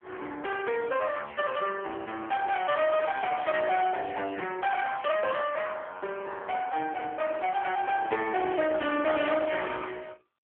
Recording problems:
phone line; 260 Hz to 3.4 kHz, AMR-NB
distorted audio; soft clipping, signal-to-distortion ratio 11 dB

